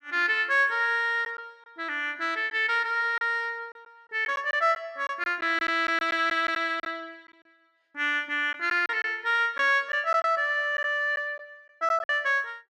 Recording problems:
lost packets; 5% of the sound replaced, filled with silence

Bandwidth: 13.5 kHz